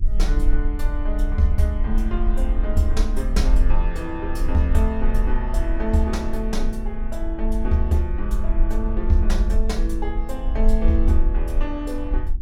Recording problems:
hum; 50 Hz, harmonics up to 350 Hz, SNR 22 dB
low-frequency rumble; below 44 Hz, strongest tone 22 Hz, SNR -1 dB

